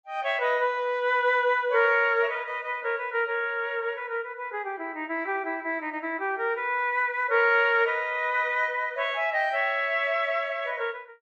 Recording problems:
treble cut off; nothing above 8 kHz

